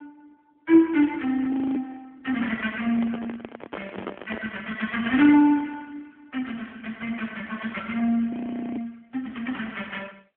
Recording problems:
phone line; 240 Hz to 3.3 kHz, AMR-NB
frozen audio; at 1.5 s and at 8.5 s
microphone handling noise; from 3 to 4.5 s; peak -6 dB vs average level

